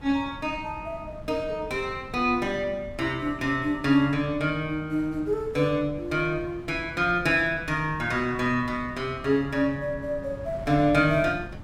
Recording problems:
wind noise; below 210 Hz, SNR 16 dB

